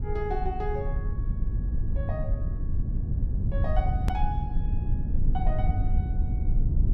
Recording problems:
rumble; below 86 Hz, SNR -7 dB
edit click; at 4 s

